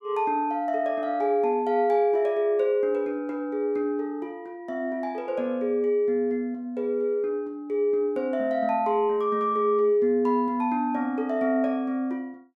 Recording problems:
none

